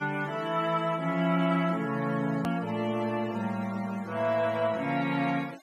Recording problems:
denoising artefacts; signal-to-artefact ratio 21 dB
hard cut with a click; at 2.5 s

